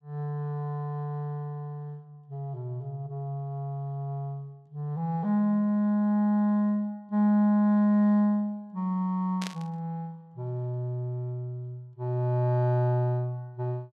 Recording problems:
static burst; at 9.5 s; peak -5 dB vs average level

